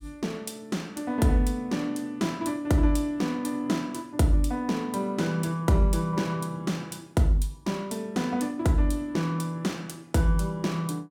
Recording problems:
none

